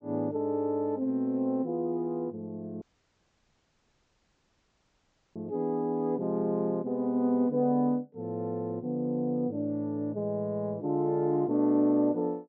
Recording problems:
treble cut off; nothing above 8 kHz
audio cutting out; at 3 s for 2.5 s

